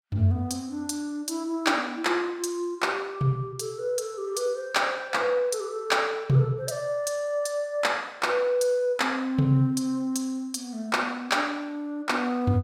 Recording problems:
none

